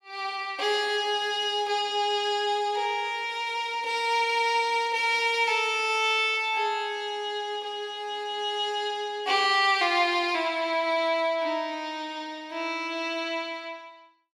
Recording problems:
none

